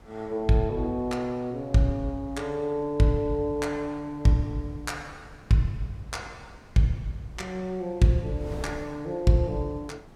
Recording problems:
wind noise; below 400 Hz, SNR 21 dB

